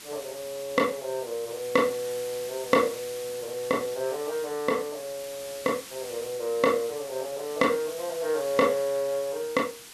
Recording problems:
background hiss; SNR 13 dB

